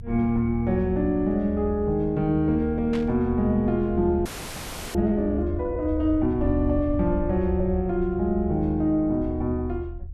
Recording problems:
rumble; below 80 Hz, strongest tone 76 Hz, SNR 9 dB
static burst; at 3 s; peak -10 dB vs average level
audio freezing; at 4.5 s for 0.5 s

